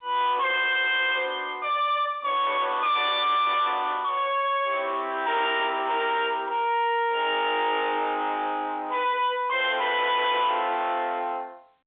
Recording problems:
phone line; 280 Hz to 3.6 kHz, G.711
distortion; soft clipping, signal-to-distortion ratio 7 dB

